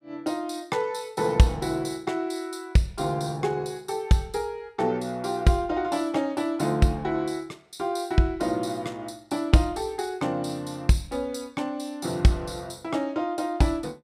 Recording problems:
none

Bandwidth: 15.5 kHz